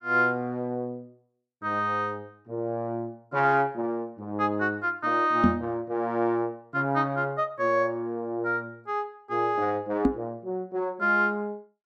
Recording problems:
knock on the microphone; at 5.5 s and at 10 s; peak +9 dB vs average level

